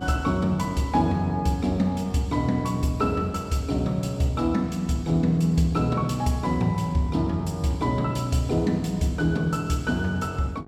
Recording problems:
electrical hum; 50 Hz, harmonics up to 1.6 kHz, SNR 19 dB

